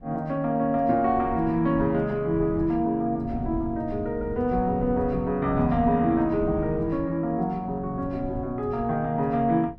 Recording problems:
low-frequency rumble; below 150 Hz, SNR 14 dB

